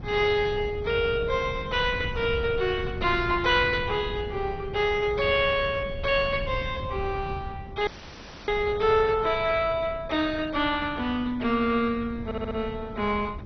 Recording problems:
lossy codec; MP2, log-spectral distance 4 dB, nothing above 6 kHz
wind on the microphone; below 150 Hz, SNR 12 dB
audio cutting out; at 8 s for 0.5 s
audio stuttering; at 12 s

